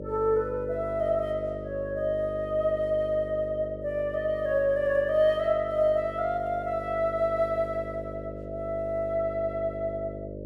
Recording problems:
hum; 50 Hz, harmonics up to 600 Hz, SNR 11 dB

